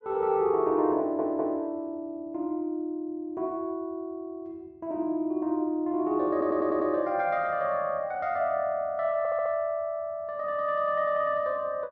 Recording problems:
audio stuttering; at 1 s, at 6.5 s and at 9 s

